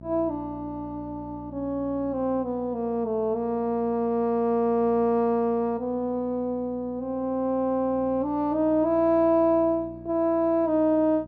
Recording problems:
hum; 60 Hz, harmonics up to 900 Hz, SNR 21 dB

